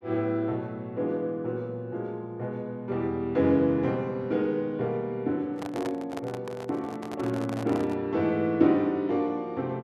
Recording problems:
handling noise; from 5.5 to 8 s; peak -4 dB vs average level

